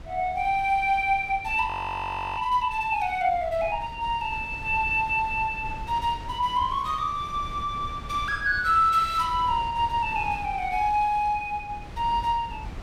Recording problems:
wind noise; below 230 Hz, SNR 16 dB
audio freezing; at 1.5 s for 0.5 s

